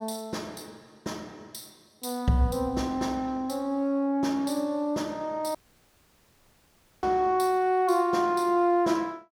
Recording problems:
dropout; at 5.5 s for 1.5 s

